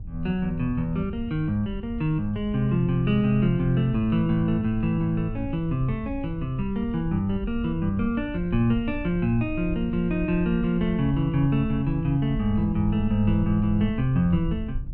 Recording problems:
hum; 50 Hz, harmonics up to 500 Hz, SNR 21 dB
low-frequency rumble; below 76 Hz, SNR 12 dB

